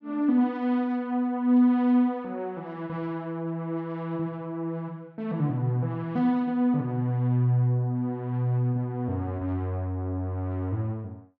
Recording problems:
none

